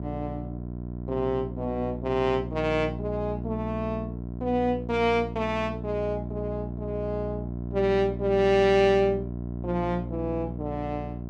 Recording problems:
hum; 60 Hz, harmonics up to 720 Hz, SNR 7 dB

